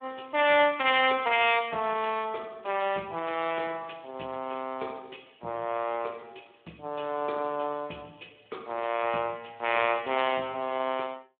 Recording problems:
telephone audio; 170 Hz to 3.6 kHz, Speex

